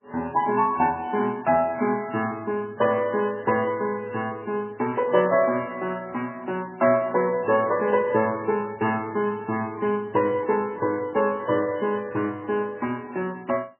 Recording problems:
lossy compression; MP3, log-spectral distance 3 dB, nothing above 2.7 kHz

